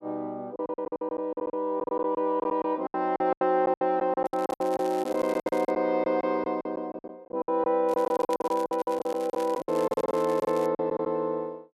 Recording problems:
packet loss; 19% of the sound replaced, filled with silence
crackling; from 4.5 to 5.5 s and from 8 to 11 s; loose cable, SNR 20 dB

